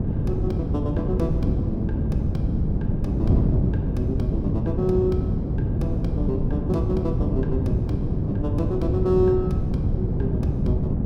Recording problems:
mains hum; 50 Hz, harmonics up to 500 Hz, SNR 7 dB
wind noise; below 200 Hz, SNR -3 dB

